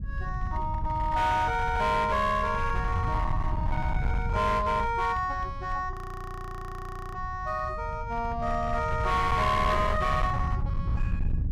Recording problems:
distorted audio; hard clipping, signal-to-distortion ratio 11 dB
low-frequency rumble; below 110 Hz, SNR 5 dB
audio freezing; at 6 s for 1 s

